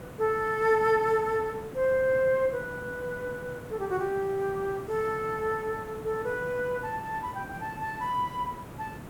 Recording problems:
background hiss; slope -8 dB per octave, SNR 14 dB

